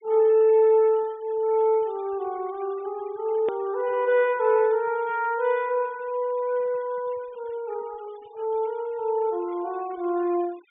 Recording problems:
treble cut off; nothing above 3.6 kHz
noise reduction artefacts; signal-to-artefact ratio 27 dB
edit click; at 3.5 s

